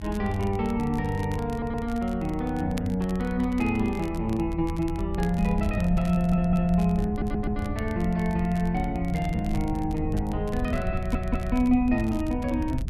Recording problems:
rumble; below 80 Hz, SNR 8 dB
crackle; vinyl, SNR 23 dB
audio stuttering; 4 times, first at 1.5 s

